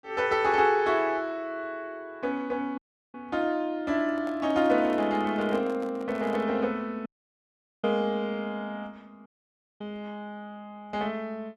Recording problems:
dropout; at 3 s, at 7 s for 1 s and at 9.5 s for 0.5 s
microphone handling noise; from 4 to 6.5 s; peak -10 dB vs average level

